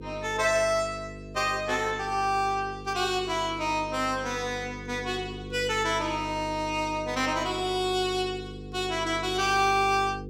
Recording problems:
hum; 50 Hz, harmonics up to 500 Hz, SNR 13 dB

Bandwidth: 17 kHz